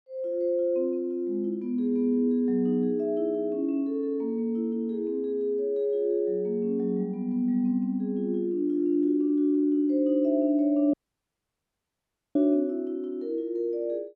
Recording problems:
dropout; at 11 s for 1.5 s

